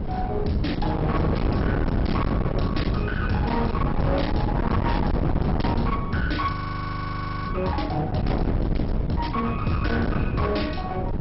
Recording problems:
lossy compression; MP2, log-spectral distance 3 dB, nothing above 5.5 kHz
distortion; hard clipping, uneven, signal-to-distortion ratio 7 dB
wind noise; below 300 Hz, SNR -1 dB
frozen audio; at 6.5 s for 1 s

